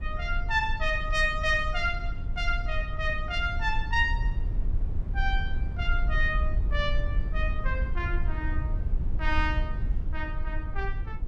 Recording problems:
rumble; below 60 Hz, SNR 1 dB

